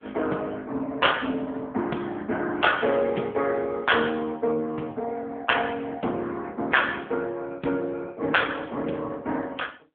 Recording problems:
phone line; 170 Hz to 3.4 kHz, AMR-NB

